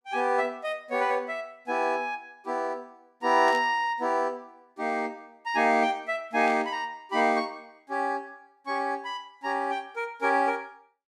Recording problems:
static burst; at 3.5 s and at 6.5 s; peak -11 dB vs average level

